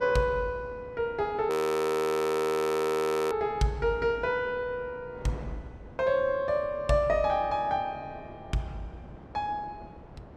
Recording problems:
wind on the microphone; below 570 Hz, SNR 20 dB
frozen audio; at 1.5 s for 2 s

